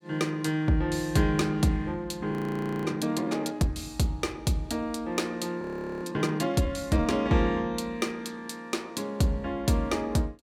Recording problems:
audio freezing; at 2.5 s for 0.5 s and at 5.5 s

